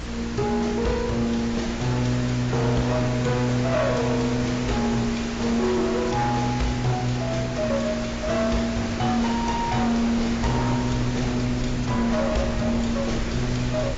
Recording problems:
lossy compression; AAC, log-spectral distance 5 dB, nothing above 7.3 kHz
distorted audio; hard clipping, signal-to-distortion ratio 11 dB
hum; 60 Hz, harmonics up to 300 Hz, SNR 14 dB
background hiss; slope -4 dB per octave, SNR 10 dB
low-frequency rumble; below 130 Hz, SNR 14 dB

